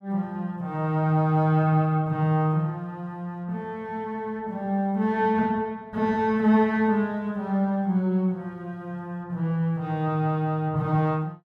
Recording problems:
none

